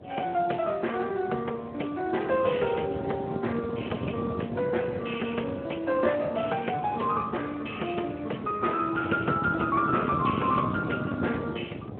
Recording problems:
phone line; 260 Hz to 3.2 kHz, Speex
wind on the microphone; below 460 Hz, SNR 7 dB

